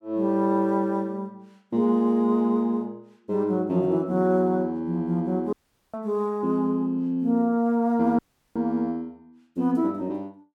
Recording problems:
audio cutting out; at 5.5 s and at 8 s

